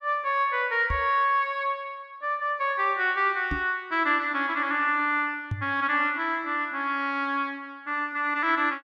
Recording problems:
microphone bump; at 1 s, at 3.5 s and at 5.5 s; peak -1 dB vs average level

